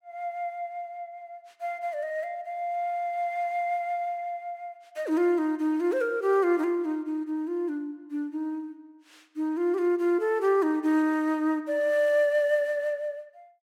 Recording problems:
none

